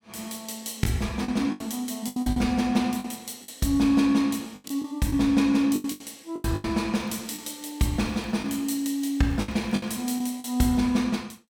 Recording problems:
packet loss; 9% of the sound replaced, filled with the last packet
crackling; from 7 to 10 s; loose cable, SNR 28 dB

